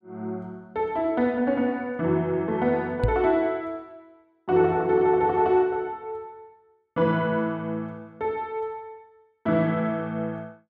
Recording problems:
knock on the microphone; at 3 s; peak +4 dB vs average level

